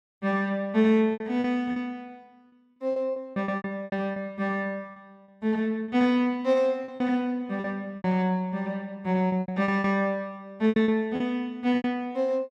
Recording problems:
lost packets; 11% of the sound replaced, filled with repeated pitch periods

